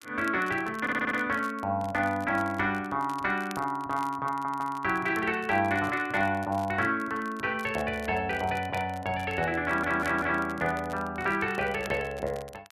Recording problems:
crackle; vinyl, SNR 22 dB
audio stuttering; at 1 s, at 4.5 s and at 9.5 s

